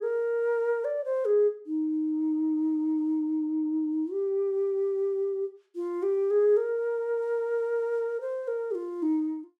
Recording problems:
none

